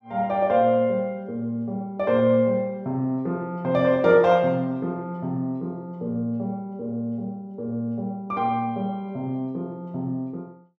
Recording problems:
none

